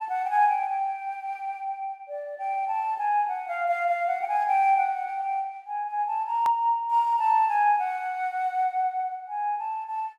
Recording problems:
hard cut with a click; at 6.5 s

